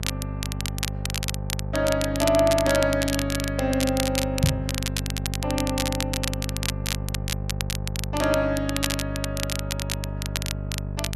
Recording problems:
hum; 50 Hz, harmonics up to 650 Hz, SNR 5 dB
crackle; vinyl, SNR 5 dB
microphone bump; at 4.5 s; peak +8 dB vs average level

